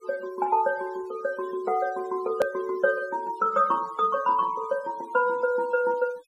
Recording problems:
noise reduction artefacts; signal-to-artefact ratio 23 dB
hard cut with a click; at 2.5 s

